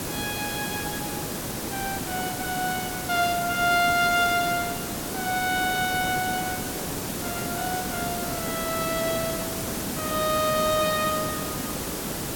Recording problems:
background hiss; SNR 3 dB

